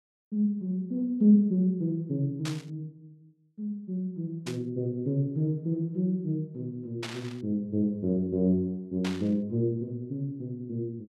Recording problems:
static burst; 4 times, first at 2.5 s; peak -3 dB vs average level

